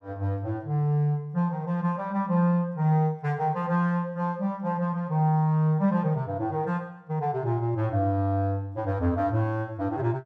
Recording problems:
none

